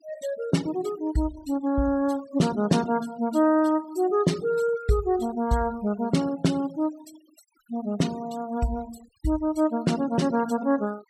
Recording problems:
noise reduction artefacts; signal-to-artefact ratio 20 dB

